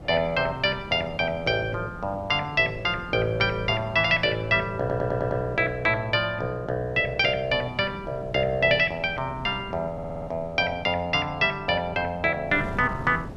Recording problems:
wind on the microphone; below 370 Hz, SNR 17 dB
audio stuttering; at 5 s and at 10 s

